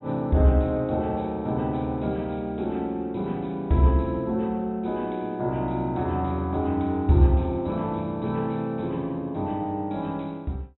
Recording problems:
low-pass filter; nothing above 3.8 kHz

